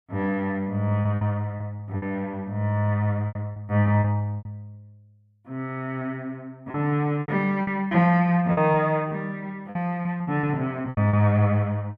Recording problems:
packet loss; 10% of the sound replaced, filled with repeated pitch periods

